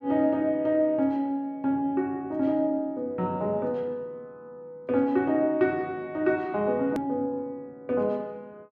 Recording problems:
edit click; at 7 s

